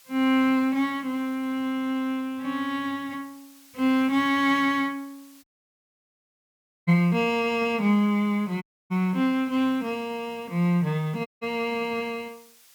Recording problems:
hiss; slope +3 dB per octave, SNR 28 dB
dropout; at 5.5 s for 1.5 s, at 8.5 s and at 11 s

